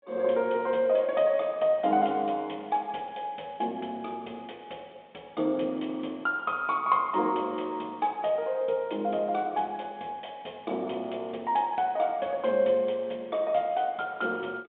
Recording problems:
telephone audio; 220 Hz to 3.7 kHz, G.726

